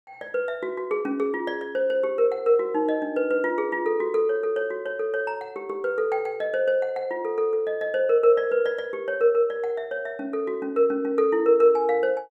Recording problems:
none

